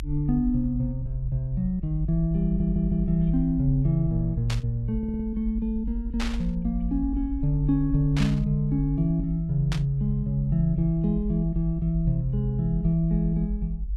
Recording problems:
rumble; below 56 Hz, strongest tone 44 Hz, SNR 8 dB
stutter; at 2.5 s and at 5 s
burst of static; 4 times, first at 4.5 s; peak -3 dB vs average level

